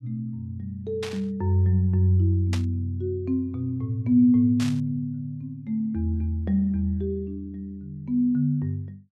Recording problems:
burst of static; at 1 s, at 2.5 s and at 4.5 s; peak -5 dB vs average level

